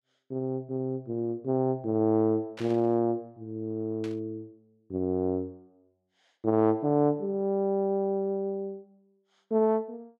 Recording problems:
burst of static; at 2.5 s and at 4 s; peak -11 dB vs average level

